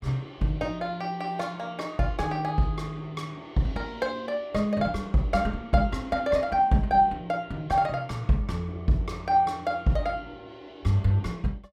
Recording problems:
none

